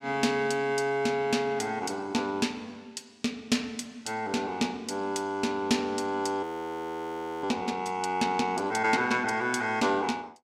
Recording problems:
frozen audio; at 6.5 s for 1 s

